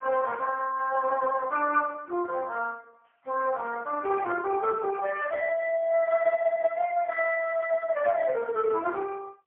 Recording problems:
phone line; 370 Hz to 3.3 kHz, AMR-NB, then MP3

